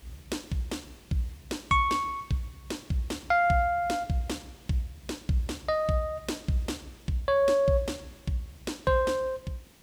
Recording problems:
hiss; SNR 26 dB

